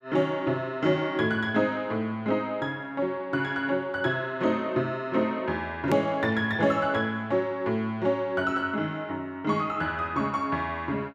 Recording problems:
click at an edit; at 6 s

